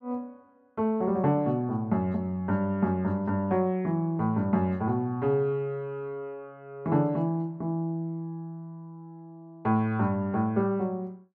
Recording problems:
none

